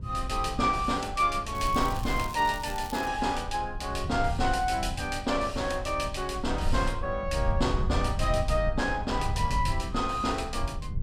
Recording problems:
electrical hum; 50 Hz, harmonics up to 1.1 kHz, SNR 23 dB
low-frequency rumble; below 94 Hz, SNR 6 dB
crackle; from 1.5 to 3 s; loose cable, SNR 16 dB

